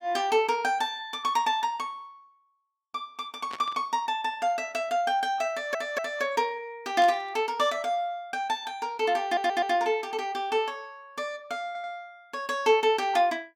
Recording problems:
static burst; at 3.5 s and at 7 s; peak -7 dB vs average level
stutter; at 5.5 s, at 9.5 s and at 12 s

